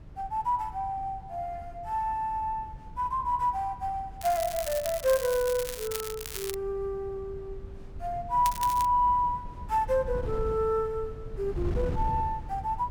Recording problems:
wind noise; below 120 Hz, SNR 12 dB
crackling; from 4 to 6.5 s and at 8.5 s; loose cable, SNR 9 dB

